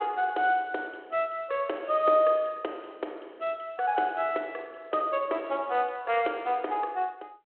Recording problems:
telephone audio; 280 Hz to 3.3 kHz, G.726

